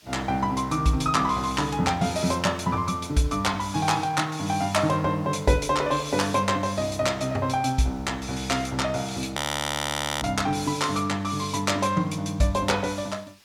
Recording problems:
hiss; slope +1 dB per octave, SNR 29 dB
audio freezing; at 9.5 s for 1 s

